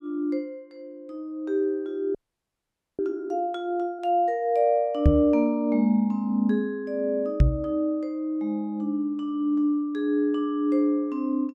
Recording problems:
frozen audio; at 2 s for 1 s
knock on the microphone; at 5 s and at 7.5 s; peak +9 dB vs average level

